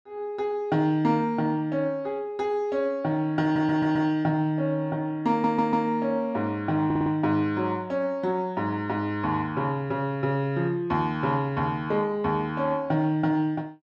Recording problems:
audio stuttering; at 3.5 s, at 5.5 s and at 7 s

